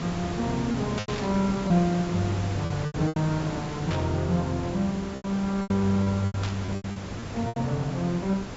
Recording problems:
low-pass filter; nothing above 8 kHz
hiss; slope -5 dB per octave, SNR 8 dB
lost packets; 10% of the sound replaced, filled with repeated pitch periods
static burst; at 1 s, at 4 s and at 6.5 s; peak -3 dB vs average level

